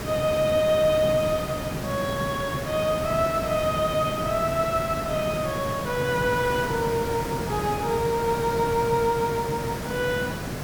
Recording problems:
background hiss; slope -5 dB per octave, SNR 6 dB

